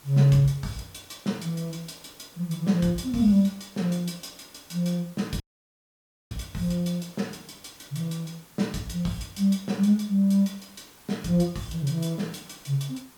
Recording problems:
background hiss; slope -2 dB per octave, SNR 25 dB
audio cutting out; at 5.5 s for 1 s

